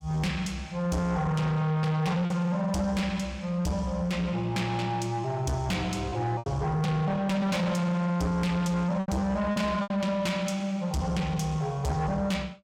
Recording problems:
distortion; soft clipping, signal-to-distortion ratio 8 dB
packet loss; 3% of the sound replaced, filled with repeated pitch periods

